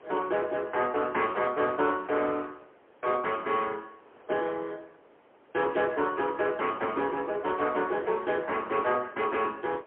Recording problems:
phone line; 320 Hz to 3.3 kHz, AMR-NB, then MP3
wind noise; below 1.2 kHz, SNR 24 dB

